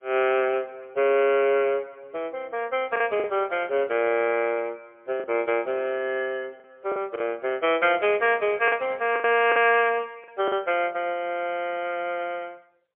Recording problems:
phone line; 300 Hz to 3.2 kHz, AMR-NB, then MP3
packet loss; 4% of the sound replaced, filled with the last packet

